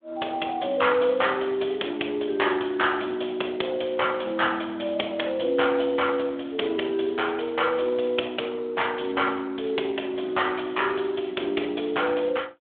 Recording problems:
telephone audio; 300 Hz to 3.5 kHz, Speex

